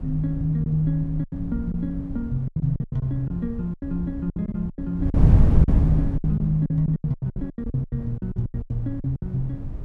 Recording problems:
wind noise; below 130 Hz, SNR 1 dB
lost packets; 17% of the sound replaced, filled with silence

